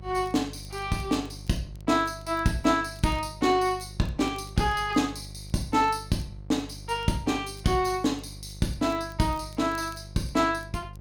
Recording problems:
electrical hum; 50 Hz, harmonics up to 550 Hz, SNR 16 dB
crackling; vinyl, SNR 30 dB

